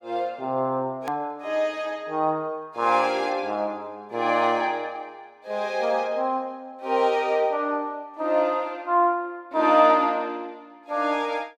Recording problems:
click at an edit; at 1 s

